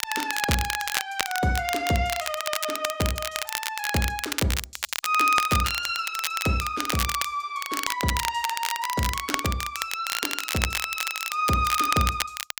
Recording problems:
crackling; vinyl, SNR 3 dB

